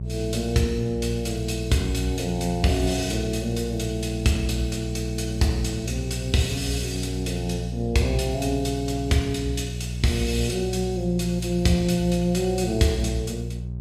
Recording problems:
hum; 60 Hz, harmonics up to 420 Hz, SNR 5 dB

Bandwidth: 13.5 kHz